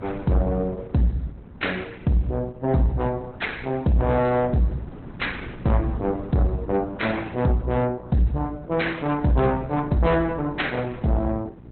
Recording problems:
lossy compression; Opus, log-spectral distance 3 dB, nothing above 4 kHz
distorted audio; soft clipping, signal-to-distortion ratio 11 dB
hum; 60 Hz, harmonics up to 780 Hz, SNR 21 dB
wind noise; below 350 Hz, SNR 19 dB

